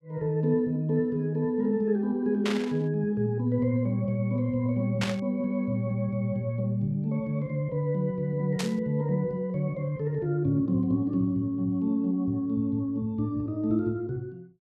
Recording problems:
burst of static; at 2.5 s, at 5 s and at 8.5 s; peak 0 dB vs average level

